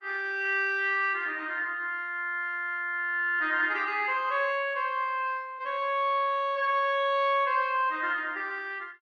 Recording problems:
lossy compression; Opus, log-spectral distance 2 dB

